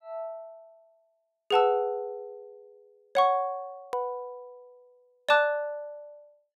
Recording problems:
click at an edit; at 4 s

